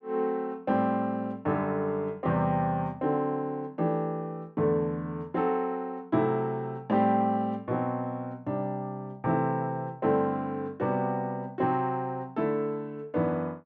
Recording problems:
none

